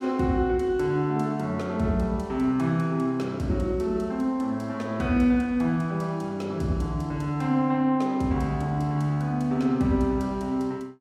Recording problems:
none

